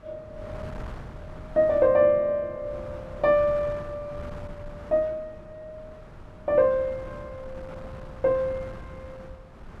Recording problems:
wind noise; below 440 Hz, SNR 18 dB

